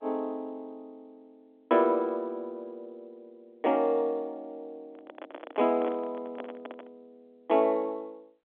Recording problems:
telephone audio; 240 Hz to 3.6 kHz, G.711
handling noise; from 5 to 7 s; peak -6 dB vs average level

